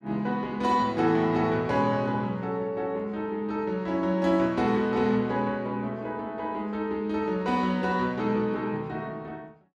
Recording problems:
none

